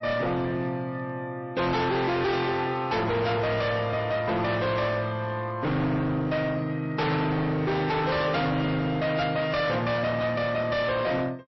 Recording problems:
lossy compression; MP3, log-spectral distance 2 dB, nothing above 5.7 kHz
distorted audio; hard clipping, signal-to-distortion ratio 6 dB

